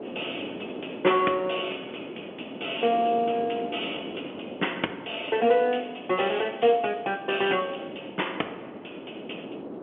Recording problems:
telephone audio; 240 Hz to 3.3 kHz, G.711
wind noise; below 530 Hz, SNR 12 dB

